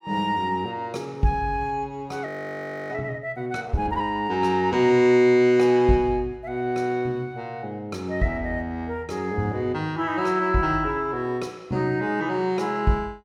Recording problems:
audio freezing; at 2.5 s for 0.5 s

